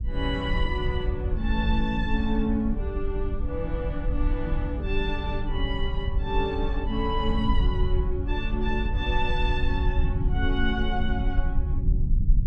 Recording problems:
low-frequency rumble; below 68 Hz, SNR -1 dB

